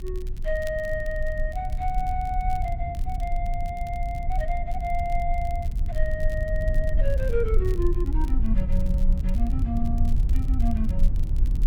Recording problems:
low-frequency rumble; below 56 Hz, strongest tone 26 Hz, SNR -3 dB
crackling; vinyl, SNR 22 dB

